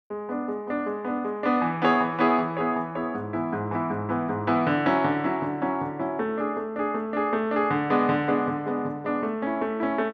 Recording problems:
none

